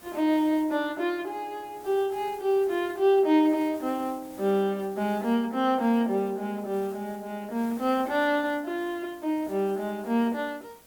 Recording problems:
hiss; slope -4 dB per octave, SNR 23 dB

